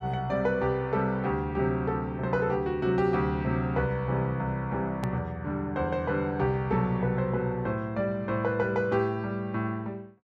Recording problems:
click at an edit; at 5 s

